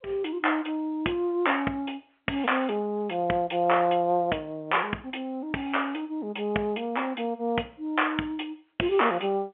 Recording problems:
telephone audio; 260 Hz to 3.3 kHz, G.711

